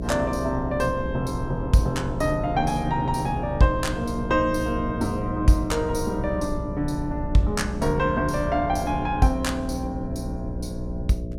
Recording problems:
hum; 60 Hz, harmonics up to 660 Hz, SNR 8 dB
rumble; below 120 Hz, SNR 11 dB

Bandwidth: 16 kHz